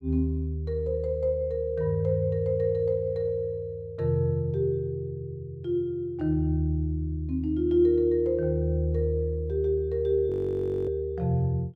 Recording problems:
frozen audio; at 10 s for 0.5 s

